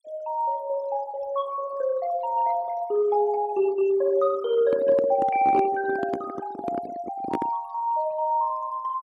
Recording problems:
denoising artefacts; signal-to-artefact ratio 22 dB
handling noise; from 4.5 to 7.5 s; peak +2 dB vs average level

